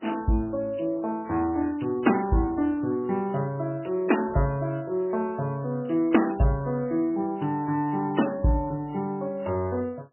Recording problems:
lossy compression; MP3, log-spectral distance 3 dB, nothing above 3 kHz

